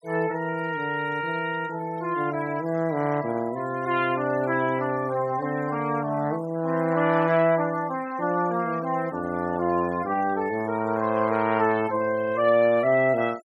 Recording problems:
noise reduction artefacts; signal-to-artefact ratio 21 dB

